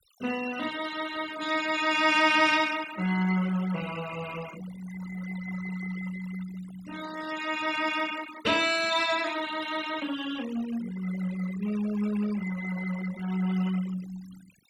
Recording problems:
noise reduction artefacts; signal-to-artefact ratio 14 dB

